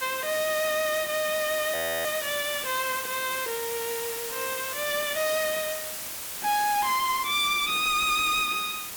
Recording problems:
distortion; hard clipping, signal-to-distortion ratio 12 dB
background hiss; slope 0 dB per octave, SNR 6 dB
audio freezing; at 1.5 s

